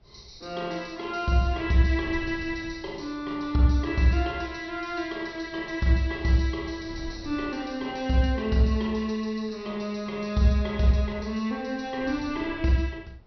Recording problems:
low-pass filter; nothing above 5.8 kHz
wind on the microphone; below 120 Hz, SNR 20 dB

